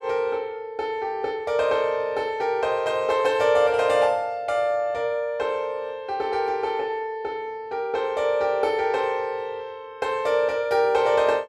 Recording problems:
none

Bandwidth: 14 kHz